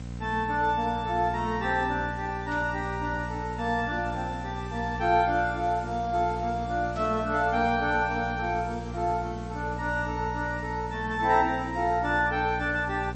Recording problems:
codec artefacts; MP3, log-spectral distance 4 dB, nothing above 7.8 kHz
hum; 60 Hz, harmonics up to 1 kHz, SNR 10 dB
background hiss; slope -2 dB per octave, SNR 24 dB
burst of static; at 2.5 s and at 7 s; peak -15 dB vs average level

